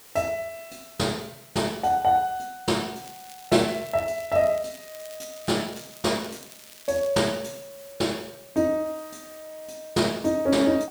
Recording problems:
background hiss; slope -1 dB per octave, SNR 21 dB
crackle; from 3 to 7 s; loose cable, SNR 20 dB

